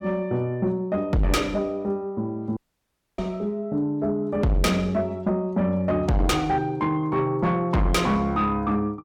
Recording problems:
distortion; soft clipping, signal-to-distortion ratio 6 dB
audio cutting out; at 2.5 s for 0.5 s

